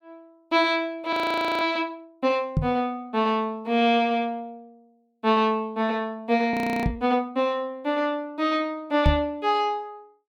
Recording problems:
frozen audio; at 1 s and at 6.5 s
microphone bump; at 2.5 s, at 7 s and at 9 s; peak +6 dB vs average level

